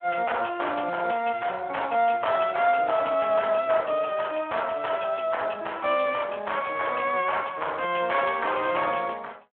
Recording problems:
telephone audio; 300 Hz to 3.3 kHz, Speex

